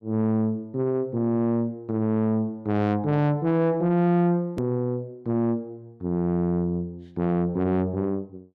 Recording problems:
distorted audio; soft clipping, signal-to-distortion ratio 11 dB
click at an edit; at 4.5 s

